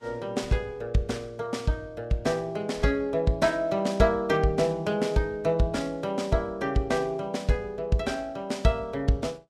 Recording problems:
lossy codec; Vorbis, log-spectral distance 2 dB, nothing above 12.3 kHz

